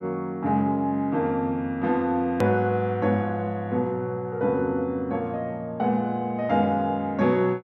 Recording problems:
edit click; at 2.5 s

